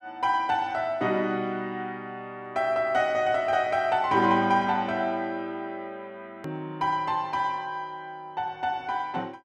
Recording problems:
click at an edit; at 6.5 s

